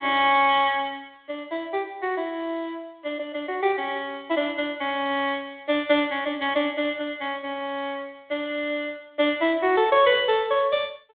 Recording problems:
phone line; 280 Hz to 3.8 kHz, G.726

